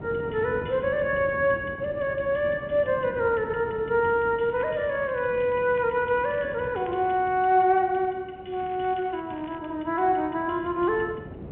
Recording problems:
telephone audio; 260 Hz to 3.3 kHz, G.711
wind on the microphone; below 420 Hz, SNR 16 dB
crackle; from 4.5 to 7 s and from 8.5 to 9.5 s; loose cable, SNR 28 dB

